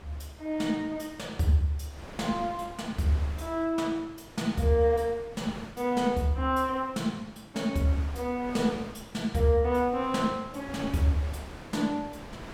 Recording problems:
wind on the microphone; below 1.3 kHz, SNR 17 dB

